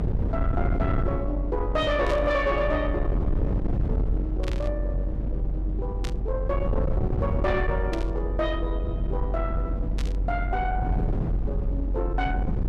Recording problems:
distorted audio; soft clipping, signal-to-distortion ratio 10 dB
rumble; below 120 Hz, strongest tone 46 Hz, SNR -1 dB
static burst; 5 times, first at 2 s; peak -4 dB vs average level

